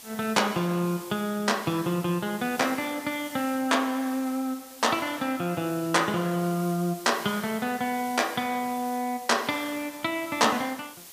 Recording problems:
hiss; slope 0 dB per octave, SNR 16 dB

